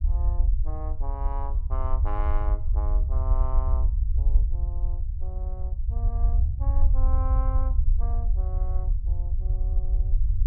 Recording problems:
rumble; below 62 Hz, SNR -14 dB

